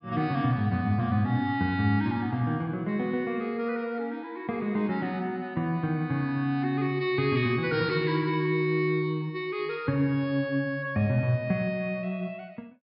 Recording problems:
low-pass filter; nothing above 5.5 kHz

